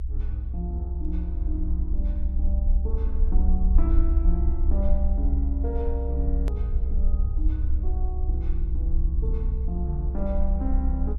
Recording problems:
rumble; below 64 Hz, SNR -9 dB
edit click; at 6.5 s

